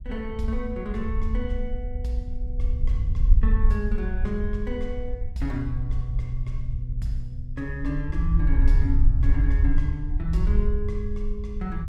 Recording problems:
low-frequency rumble; below 60 Hz, SNR -5 dB

